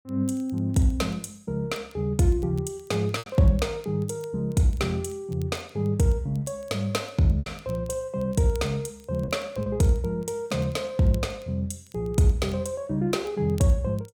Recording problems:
crackling; vinyl, SNR 29 dB
lost packets; 1.9% of the sound replaced, filled with repeated pitch periods

